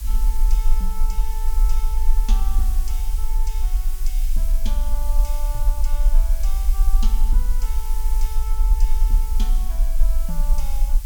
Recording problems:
hiss; slope +1 dB per octave, SNR 2 dB
low-frequency rumble; below 40 Hz, strongest tone 18 Hz, SNR -15 dB

